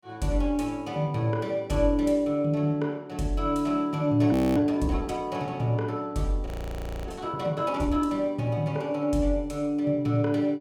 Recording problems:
frozen audio; at 4.5 s and at 6.5 s for 0.5 s

